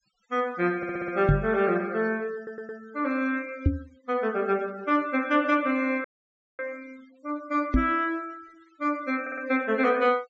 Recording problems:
treble missing; nothing above 8 kHz
denoising artefacts; signal-to-artefact ratio 25 dB
audio stuttering; at 1 s, at 2.5 s and at 9 s
microphone bump; at 1.5 s, at 3.5 s and at 7.5 s; peak +8 dB vs average level
dropout; at 6 s for 0.5 s

